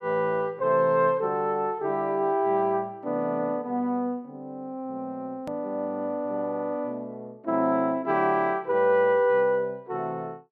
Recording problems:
edit click; at 5.5 s

